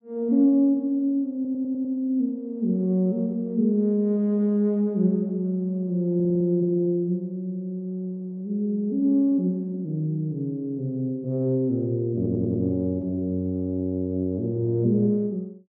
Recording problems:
audio stuttering; at 1.5 s, at 6 s and at 12 s

